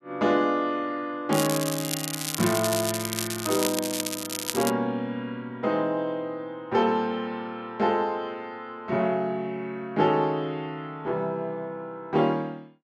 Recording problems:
crackle; from 1.5 to 4.5 s; loose cable, SNR 3 dB

